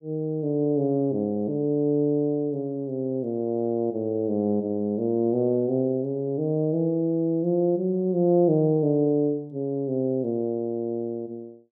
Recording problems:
none

